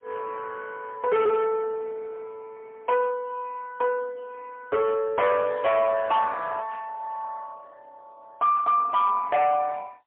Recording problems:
phone line; 320 Hz to 3.6 kHz, AMR-NB, then MP3
distortion; hard clipping, signal-to-distortion ratio 11 dB

